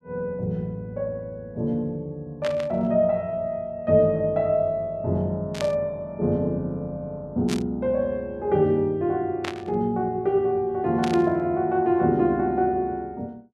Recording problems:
static burst; 5 times, first at 2.5 s; peak -3 dB vs average level

